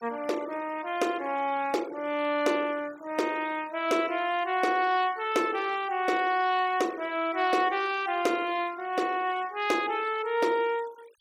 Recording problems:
denoising artefacts; signal-to-artefact ratio 20 dB

